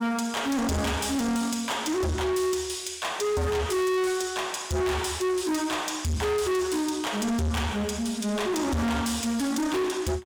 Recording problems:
distorted audio; soft clipping, signal-to-distortion ratio 6 dB

